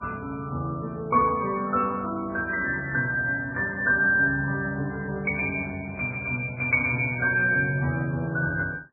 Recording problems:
lossy codec; MP3, log-spectral distance 2 dB, nothing above 2.2 kHz

